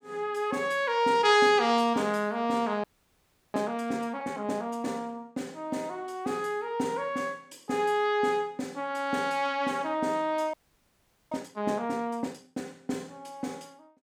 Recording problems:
frozen audio; at 3 s for 0.5 s and at 11 s for 1 s

